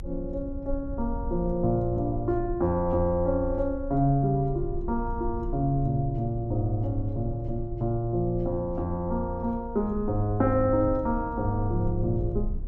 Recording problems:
low-frequency rumble; below 62 Hz, strongest tone 28 Hz, SNR 10 dB

